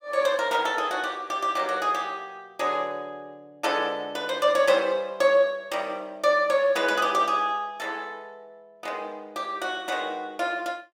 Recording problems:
none

